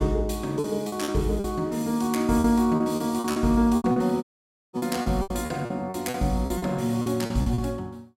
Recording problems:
lost packets; 14% of the sound replaced, filled with repeated pitch periods
audio cutting out; at 4 s for 0.5 s

